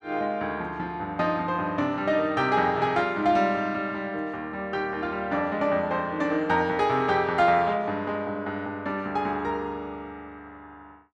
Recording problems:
none

